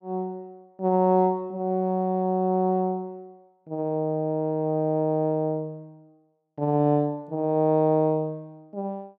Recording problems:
none

